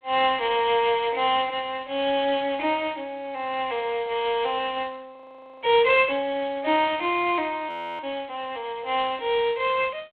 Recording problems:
phone line; 280 Hz to 3.7 kHz, G.726
audio freezing; at 5 s and at 7.5 s

